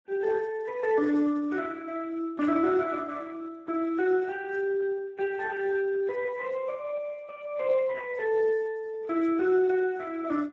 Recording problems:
lossy compression; MP3, then Speex, log-spectral distance 2 dB, nothing above 7.6 kHz
static burst; at 2.5 s and at 8 s; peak -9 dB vs average level

